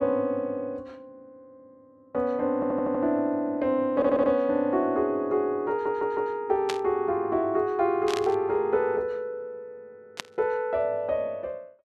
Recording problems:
audio stuttering; at 2.5 s, at 4 s and at 5.5 s
burst of static; at 6.5 s, at 8 s and at 10 s; peak -1 dB vs average level

